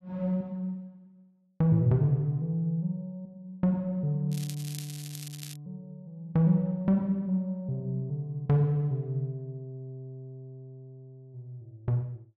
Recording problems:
crackle; from 4.5 to 5.5 s; loose cable, SNR 14 dB

